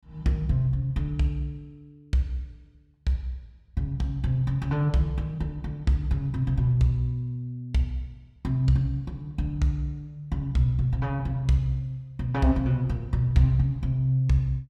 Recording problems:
none

